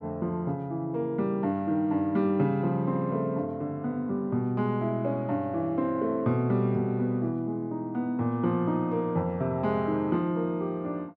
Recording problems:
none

